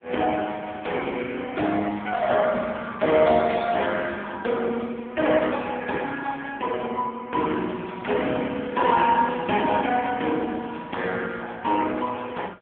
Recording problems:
phone line; 220 Hz to 3.5 kHz, AMR-NB

